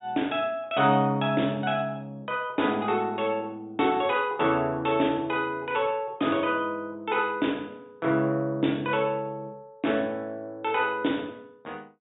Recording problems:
treble cut off; nothing above 4 kHz

